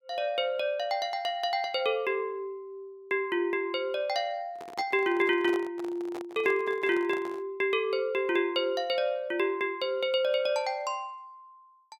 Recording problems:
microphone handling noise; from 4.5 to 7.5 s; peak -7 dB vs average level

